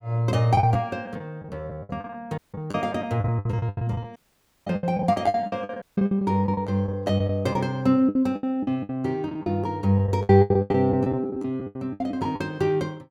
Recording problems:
packet loss; 17% of the sound replaced, filled with the last packet
audio cutting out; at 2.5 s, at 4 s for 0.5 s and at 6 s

